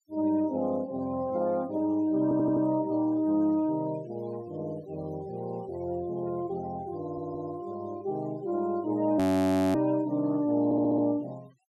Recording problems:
denoising artefacts; signal-to-artefact ratio 26 dB
audio stuttering; at 2 s, at 7 s and at 11 s
audio freezing; at 9 s for 0.5 s

